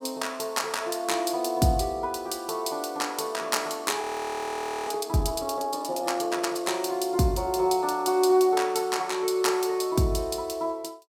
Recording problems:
audio freezing; at 4 s for 1 s

